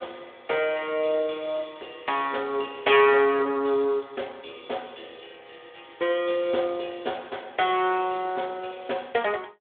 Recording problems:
telephone audio; 300 Hz to 3.5 kHz, Speex

